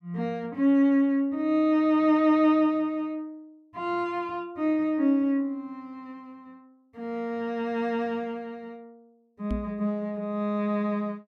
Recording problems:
microphone bump; at 9.5 s; peak -2 dB vs average level

